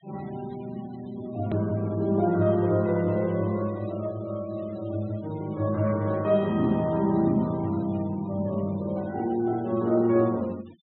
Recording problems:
low-pass filter; nothing above 4 kHz
denoising artefacts; signal-to-artefact ratio 25 dB
click at an edit; at 1.5 s

